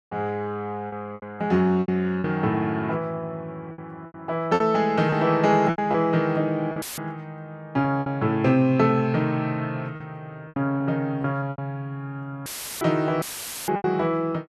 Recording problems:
packet loss; 8% of the sound replaced, filled with repeated pitch periods
dropout; at 7 s, at 12 s and at 13 s; filled with static

